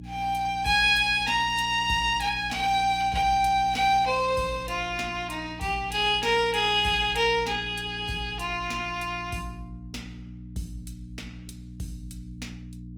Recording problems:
codec artefacts; Opus, log-spectral distance 3 dB, nothing above 19 kHz
electrical hum; 60 Hz, harmonics up to 300 Hz, SNR 17 dB

